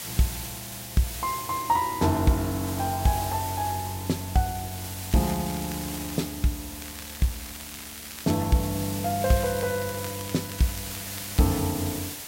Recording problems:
background hiss; slope 0 dB per octave, SNR 8 dB
crackling; from 5 to 6 s, from 7 to 8.5 s and from 9 to 11 s; loose cable, SNR 15 dB

